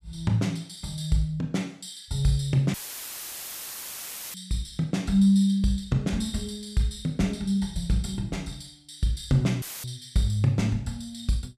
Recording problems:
audio cutting out; at 2.5 s for 1.5 s and at 9.5 s; filled with static

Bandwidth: 14.5 kHz